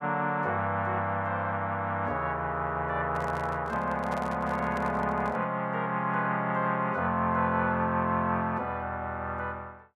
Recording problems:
microphone handling noise; from 3 to 5.5 s; peak -6 dB vs average level

